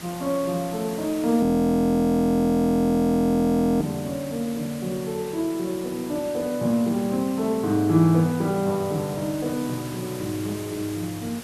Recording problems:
hiss; slope -3 dB per octave, SNR 16 dB
frozen audio; at 1.5 s for 2.5 s

